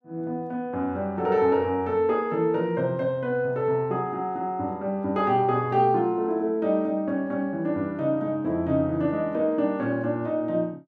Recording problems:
none

